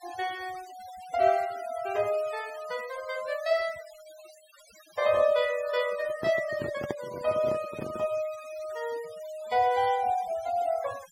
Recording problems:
noise reduction artefacts; signal-to-artefact ratio 19 dB
microphone handling noise; from 6 to 8 s; peak 0 dB vs average level

